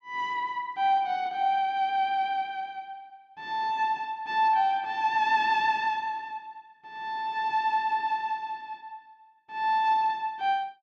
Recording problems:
none

